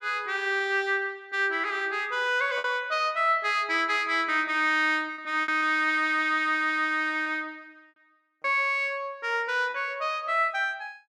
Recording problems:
lost packets; 3% of the sound replaced, filled with repeated pitch periods

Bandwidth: 14.5 kHz